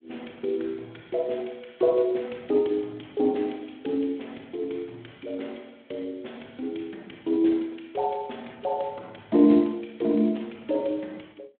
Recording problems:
phone line; 220 Hz to 3.7 kHz, Speex

